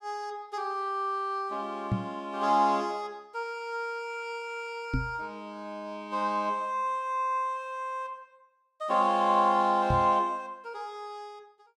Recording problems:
microphone thump; at 2 s, at 5 s and at 10 s; peak +5 dB vs average level

